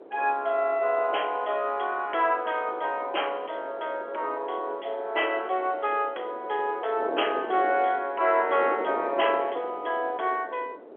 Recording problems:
telephone audio; 340 Hz to 3.3 kHz, G.711
wind noise; below 590 Hz, SNR 13 dB

